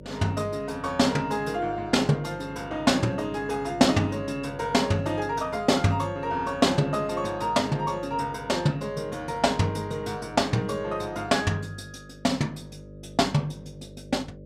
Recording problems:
electrical hum; 50 Hz, harmonics up to 600 Hz, SNR 18 dB

